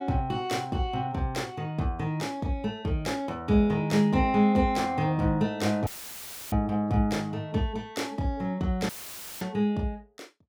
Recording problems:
dropout; at 6 s for 0.5 s and at 9 s for 0.5 s; filled with static

